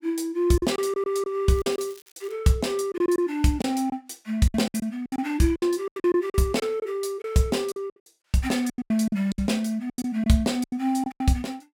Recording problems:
lost packets; 14% of the sound replaced, filled with silence
crackle; at 1.5 s; loose cable, SNR 25 dB

